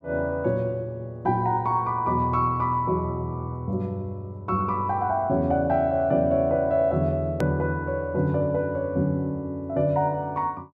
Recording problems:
edit click; at 7.5 s

